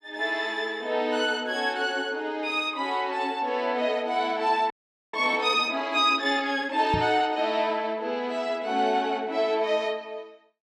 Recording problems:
frozen audio; at 4.5 s
knock on the microphone; at 7 s; peak 0 dB vs average level

